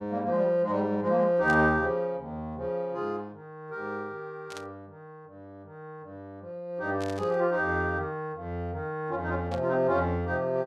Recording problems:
burst of static; 4 times, first at 1.5 s; peak -10 dB vs average level

